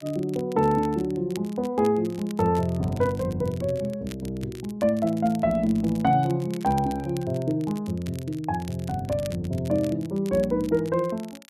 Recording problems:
crackle; vinyl, SNR 22 dB

